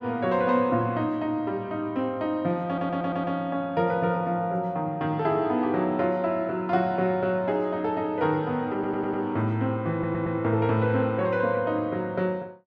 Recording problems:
stutter; at 2.5 s, at 8.5 s and at 10 s

